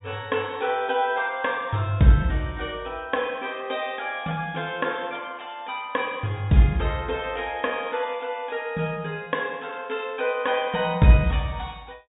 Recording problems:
treble cut off; nothing above 4 kHz

